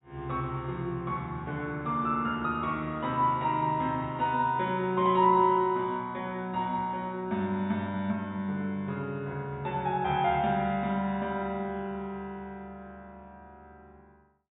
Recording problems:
treble cut off; nothing above 4 kHz

